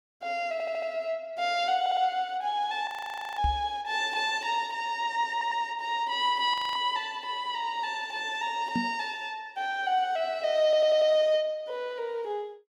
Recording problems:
audio stuttering; 4 times, first at 0.5 s
audio freezing; at 3 s for 0.5 s and at 6.5 s
knock on the microphone; at 3.5 s and at 9 s; peak +2 dB vs average level

